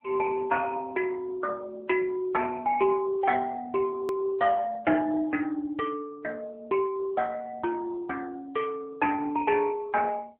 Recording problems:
telephone audio; 260 Hz to 2.5 kHz, AMR-NB
edit click; at 4 s

